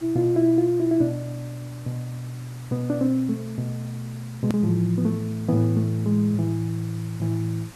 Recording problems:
hiss; slope -3 dB per octave, SNR 22 dB
hard cut with a click; at 4.5 s

